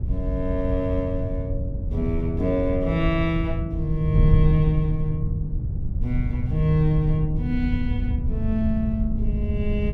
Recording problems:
wind on the microphone; below 100 Hz, SNR 2 dB

